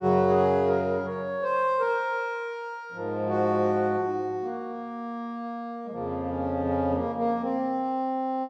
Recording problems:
none

